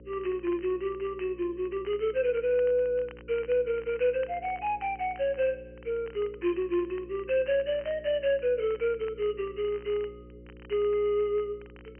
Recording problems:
treble missing; nothing above 3.1 kHz
hum; 60 Hz, harmonics up to 540 Hz, SNR 20 dB
crackle; vinyl, SNR 26 dB

